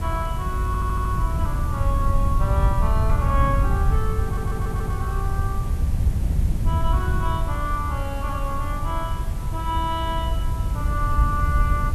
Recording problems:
background hiss; slope -5 dB per octave, SNR 11 dB
wind on the microphone; below 100 Hz, SNR -4 dB
audio stuttering; at 0.5 s and at 4 s

